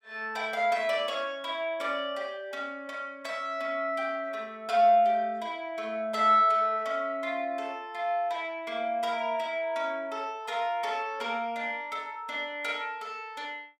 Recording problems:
none

